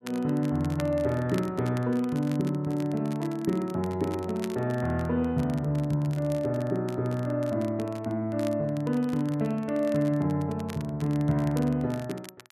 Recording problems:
crackle; vinyl, SNR 21 dB

